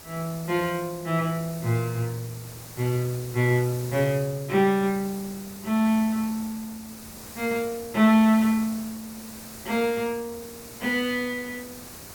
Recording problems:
background hiss; SNR 15 dB

